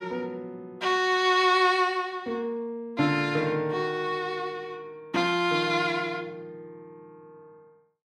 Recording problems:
none

